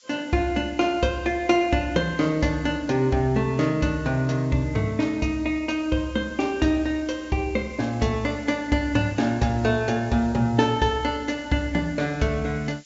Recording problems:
treble cut off; nothing above 7.5 kHz
hiss; slope +7 dB per octave, SNR 27 dB

